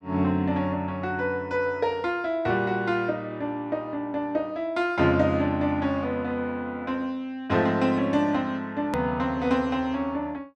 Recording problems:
hard cut with a click; at 9 s

